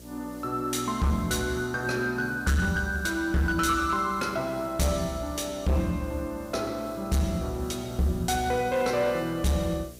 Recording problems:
distorted audio; hard clipping, signal-to-distortion ratio 10 dB
electrical hum; 60 Hz, harmonics up to 660 Hz, SNR 21 dB
hiss; SNR 23 dB

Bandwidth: 15.5 kHz